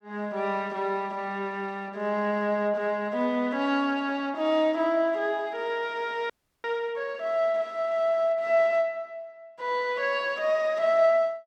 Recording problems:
audio freezing; at 6.5 s

